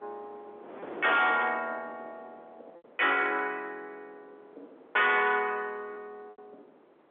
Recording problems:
phone line; 280 Hz to 3.7 kHz, G.711
distortion; hard clipping, signal-to-distortion ratio 12 dB
wind on the microphone; below 1.2 kHz, SNR 21 dB
packet loss; 2% of the sound replaced, filled with repeated pitch periods

